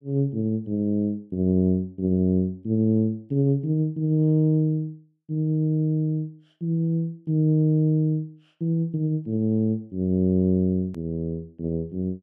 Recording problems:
edit click; at 11 s

